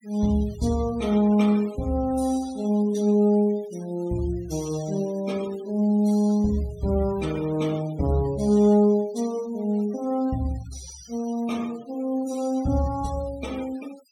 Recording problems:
denoising artefacts; signal-to-artefact ratio 22 dB

